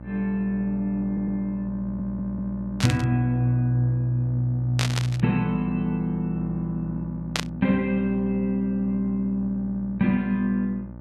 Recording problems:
hum; 60 Hz, harmonics up to 960 Hz, SNR 13 dB
audio stuttering; at 1 s and at 2 s
burst of static; at 3 s, at 5 s and at 7.5 s; peak +4 dB vs average level

